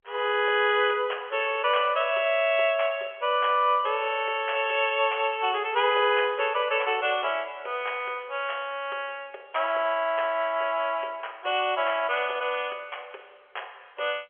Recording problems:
telephone audio; 370 Hz to 3.3 kHz, G.711

